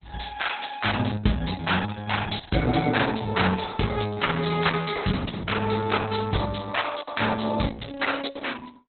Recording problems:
lossy compression; Opus, log-spectral distance 8 dB, nothing above 4.1 kHz

